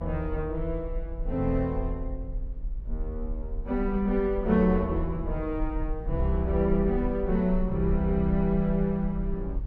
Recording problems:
rumble; below 48 Hz, strongest tone 32 Hz, SNR 8 dB

